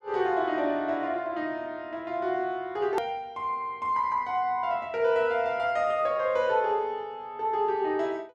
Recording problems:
edit click; at 3 s

